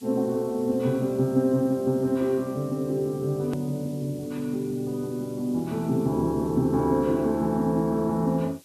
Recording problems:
hiss; SNR 25 dB
hard cut with a click; at 3.5 s

